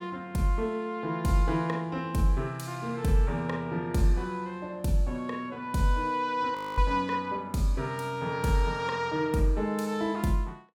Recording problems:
frozen audio; at 6.5 s

